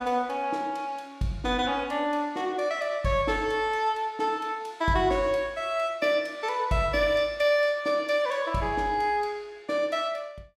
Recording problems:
none

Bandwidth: 16.5 kHz